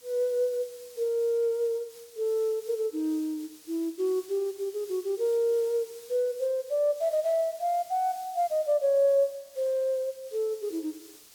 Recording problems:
hiss; slope +1 dB per octave, SNR 21 dB

